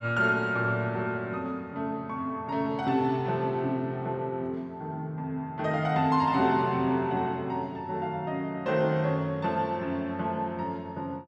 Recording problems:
none

